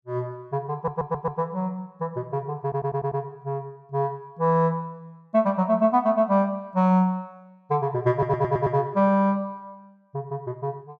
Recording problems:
stutter; at 0.5 s, at 2.5 s and at 8 s

